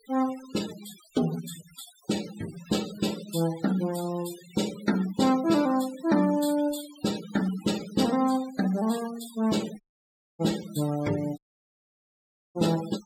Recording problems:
denoising artefacts; signal-to-artefact ratio 14 dB
audio cutting out; at 10 s for 0.5 s and at 11 s for 1 s

